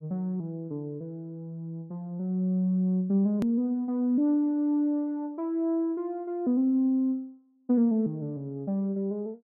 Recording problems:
edit click; at 3.5 s

